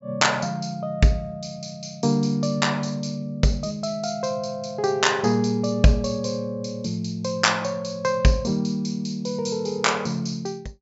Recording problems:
low-pass filter; nothing above 8 kHz

